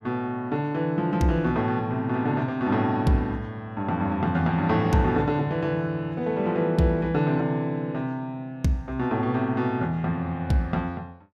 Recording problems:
none

